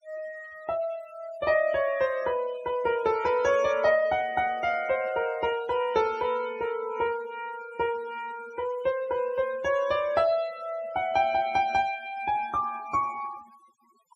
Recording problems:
denoising artefacts; signal-to-artefact ratio 21 dB

